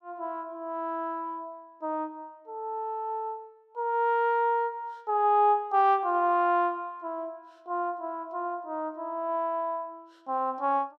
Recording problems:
none

